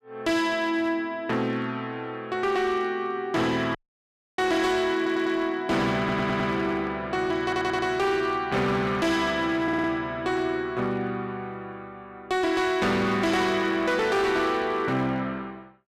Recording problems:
distorted audio; hard clipping, signal-to-distortion ratio 11 dB
dropout; at 4 s for 0.5 s
stutter; 4 times, first at 5 s

